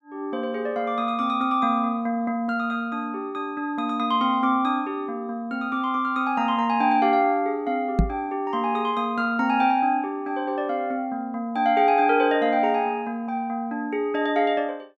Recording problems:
microphone thump; at 8 s; peak +7 dB vs average level

